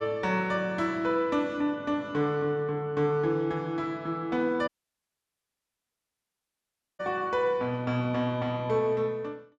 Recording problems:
dropout; at 4.5 s for 2.5 s

